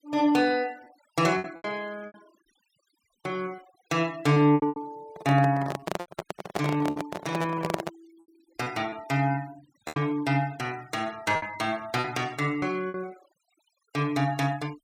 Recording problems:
noise reduction artefacts; signal-to-artefact ratio 24 dB
packet loss; 8% of the sound replaced, filled with repeated pitch periods
microphone handling noise; from 5 to 8 s; peak +3 dB vs average level

